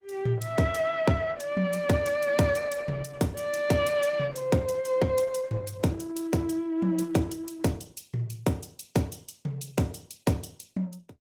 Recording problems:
lossy compression; Opus, log-spectral distance 4 dB, nothing above 20.1 kHz

